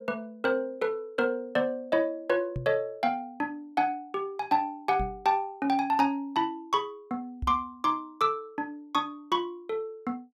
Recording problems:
microphone bump; at 2.5 s, at 5 s and at 7.5 s; peak -1 dB vs average level

